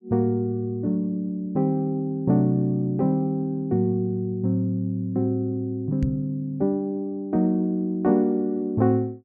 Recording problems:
knock on the microphone; at 6 s; peak +2 dB vs average level

